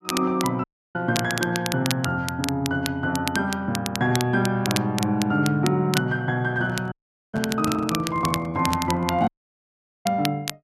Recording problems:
crackle; vinyl, SNR 8 dB
audio cutting out; at 0.5 s, at 7 s and at 9.5 s for 1 s
handling noise; from 6.5 to 9.5 s; peak -3 dB vs average level

